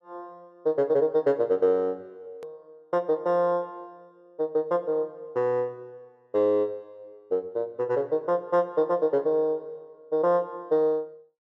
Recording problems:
hard cut with a click; at 2.5 s

